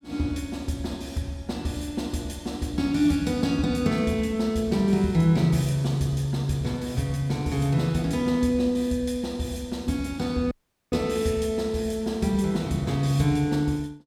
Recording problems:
dropout; at 11 s

